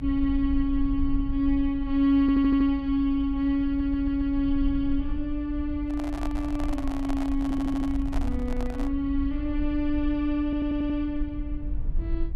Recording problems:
low-frequency rumble; below 54 Hz, SNR 8 dB
stutter; 4 times, first at 2 s
microphone handling noise; from 6 to 9 s; peak -6 dB vs average level

